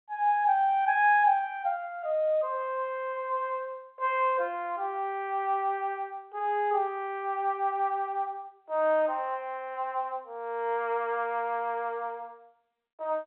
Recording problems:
phone line; 340 Hz to 3.3 kHz, G.711

